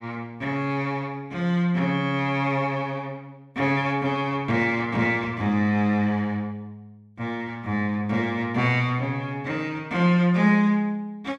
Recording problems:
none

